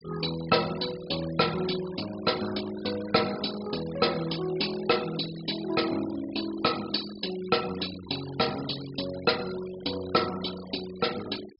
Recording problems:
treble cut off; nothing above 5.5 kHz
denoising artefacts; signal-to-artefact ratio 13 dB

